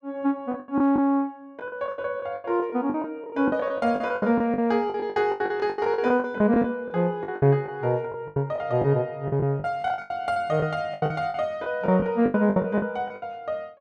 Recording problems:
lost packets; 18% of the sound replaced, filled with the last packet

